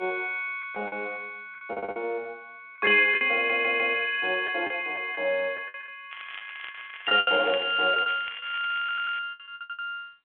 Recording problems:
telephone audio; 280 Hz to 3.7 kHz, G.726
packet loss; 10% of the sound replaced, filled with the last packet
stutter; at 1.5 s, at 3.5 s and at 9 s
crackle; from 6 to 9 s; loose cable, SNR 16 dB

